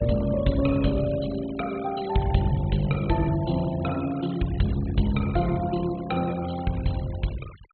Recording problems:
treble missing; nothing above 4 kHz
noise reduction artefacts; signal-to-artefact ratio 19 dB

